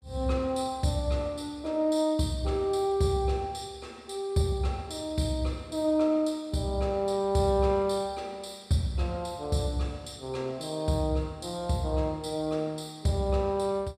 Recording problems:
none

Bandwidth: 14.5 kHz